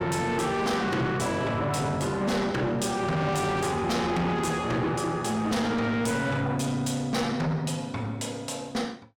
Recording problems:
distortion; soft clipping, signal-to-distortion ratio 8 dB

